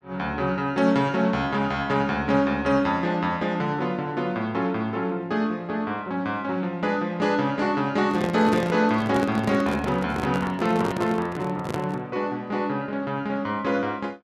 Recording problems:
microphone handling noise; from 8 to 12 s; peak +1 dB vs average level

